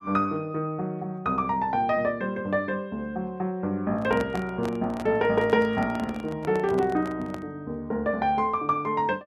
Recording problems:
handling noise; from 4 to 7.5 s; peak -4 dB vs average level

